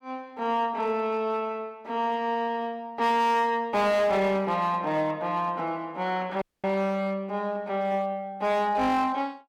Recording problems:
distortion; hard clipping, signal-to-distortion ratio 11 dB
audio cutting out; at 6.5 s

